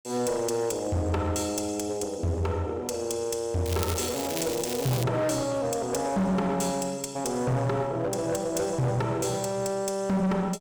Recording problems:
distortion; hard clipping, uneven, signal-to-distortion ratio 7 dB
crackle; from 3.5 to 5 s; loose cable, SNR 7 dB

